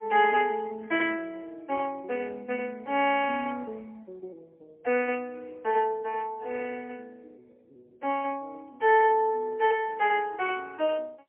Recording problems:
phone line; 300 Hz to 3.1 kHz, AMR-NB, then MP3

